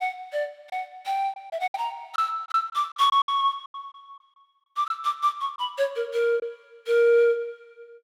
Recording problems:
lost packets; 7% of the sound replaced, filled with silence

